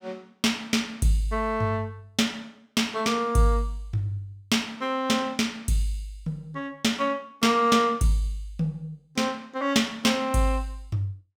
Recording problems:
none

